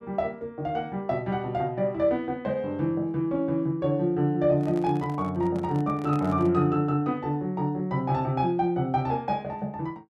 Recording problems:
handling noise; from 4.5 to 6.5 s; peak -11 dB vs average level

